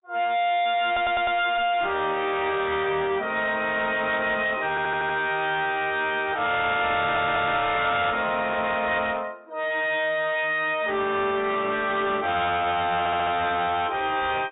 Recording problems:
low-pass filter; nothing above 3.7 kHz
lossy codec; AAC, log-spectral distance 2 dB
distorted audio; soft clipping, signal-to-distortion ratio 7 dB
audio stuttering; 4 times, first at 1 s

